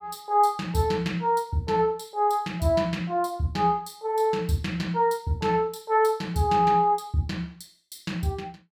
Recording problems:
none

